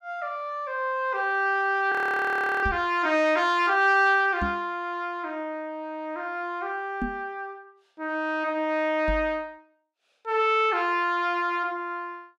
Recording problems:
frozen audio; at 2 s for 0.5 s
microphone bump; 4 times, first at 2.5 s; peak -2 dB vs average level

